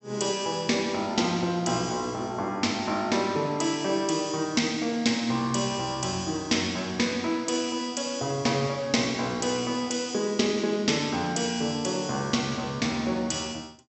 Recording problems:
low-pass filter; nothing above 8 kHz

